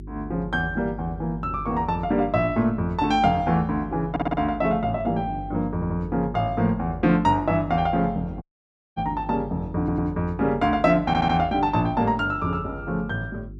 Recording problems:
electrical hum; 50 Hz, harmonics up to 400 Hz, SNR 15 dB
stutter; 4 times, first at 4 s
dropout; at 8.5 s for 0.5 s

